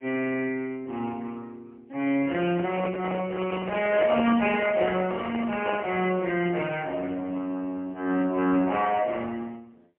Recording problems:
phone line; 190 Hz to 3.1 kHz, AMR-NB, then MP3
handling noise; from 2.5 to 6 s; peak -1 dB vs average level

